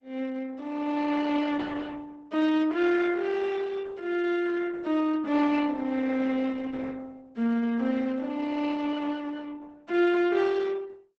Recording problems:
lossy codec; Opus, log-spectral distance 3 dB, nothing above 7.8 kHz

